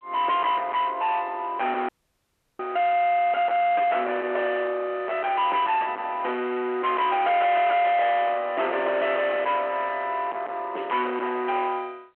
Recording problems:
phone line; 300 Hz to 3.6 kHz, G.726
distortion; soft clipping, signal-to-distortion ratio 7 dB
audio cutting out; at 2 s for 0.5 s

